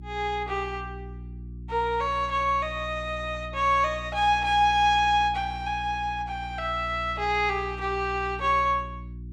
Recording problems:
hum; 60 Hz, harmonics up to 360 Hz, SNR 14 dB

